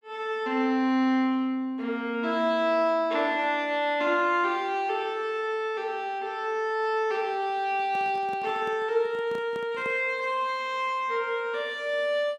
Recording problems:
microphone handling noise; from 7.5 to 10 s; peak -10 dB vs average level

